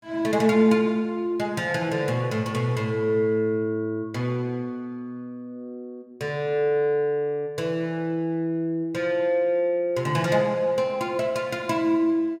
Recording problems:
none

